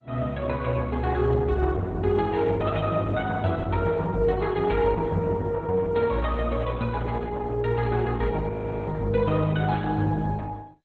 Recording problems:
lossy codec; MP2, then Opus, log-spectral distance 3 dB
audio freezing; at 8.5 s

